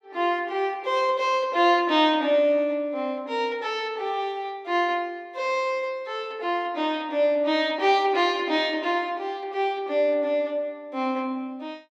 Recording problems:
none

